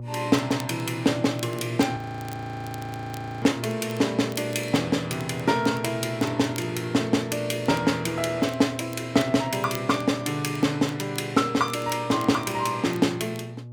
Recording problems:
electrical hum; 60 Hz, harmonics up to 600 Hz, SNR 12 dB
crackling; vinyl, SNR 22 dB
audio freezing; at 2 s for 1.5 s

